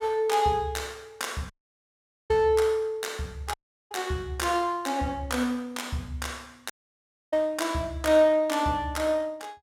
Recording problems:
dropout; at 1.5 s for 1 s, at 3.5 s and at 6.5 s for 0.5 s

